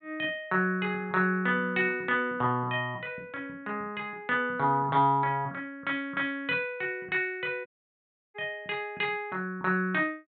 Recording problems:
treble cut off; nothing above 4 kHz
dropout; at 7.5 s for 0.5 s

